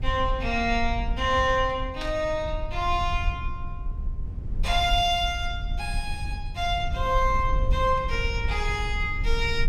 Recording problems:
rumble; below 68 Hz, SNR 6 dB
burst of static; at 2 s; peak -7 dB vs average level

